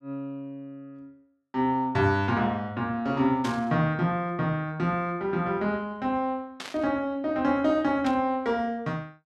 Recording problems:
static burst; at 3.5 s, at 6.5 s and at 8 s; peak -6 dB vs average level

